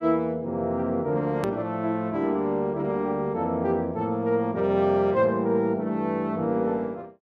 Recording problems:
edit click; at 1.5 s

